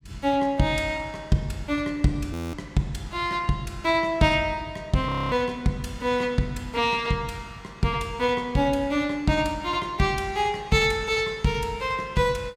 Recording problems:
frozen audio; at 2.5 s and at 5 s

